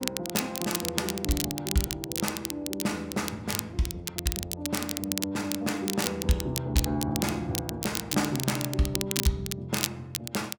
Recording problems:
crackling; vinyl, SNR 2 dB

